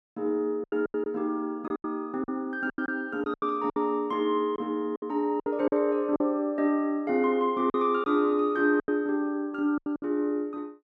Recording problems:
lost packets; 10% of the sound replaced, filled with silence

